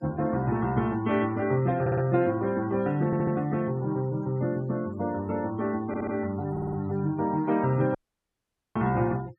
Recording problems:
noise reduction artefacts; signal-to-artefact ratio 21 dB
audio stuttering; 4 times, first at 2 s
audio cutting out; at 8 s for 1 s

